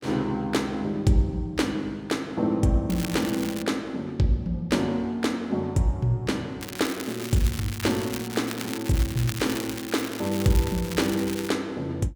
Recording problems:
crackling; at 3 s and from 6.5 to 11 s; loose cable, SNR 10 dB

